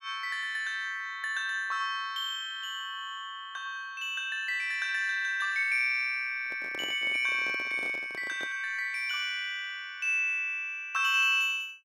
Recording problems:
handling noise; from 6.5 to 8.5 s; peak -9 dB vs average level

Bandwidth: 17 kHz